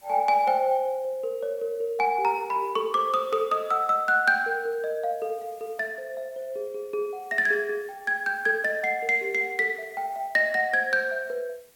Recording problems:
hiss; slope -1 dB per octave, SNR 29 dB

